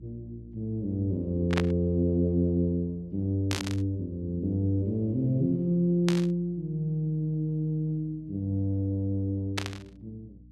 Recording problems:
hum; 60 Hz, harmonics up to 300 Hz, SNR 24 dB
burst of static; 4 times, first at 1.5 s; peak +2 dB vs average level

